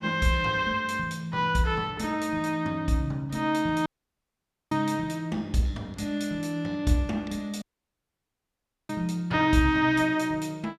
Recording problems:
audio cutting out; at 4 s for 1 s and at 7.5 s for 1.5 s

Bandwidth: 14.5 kHz